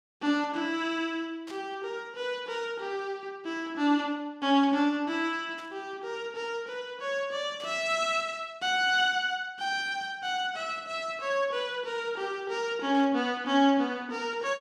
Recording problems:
burst of static; 5 times, first at 1.5 s; peak -13 dB vs average level

